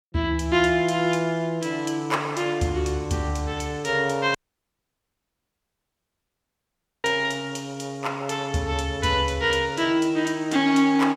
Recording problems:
audio cutting out; at 4.5 s for 2.5 s

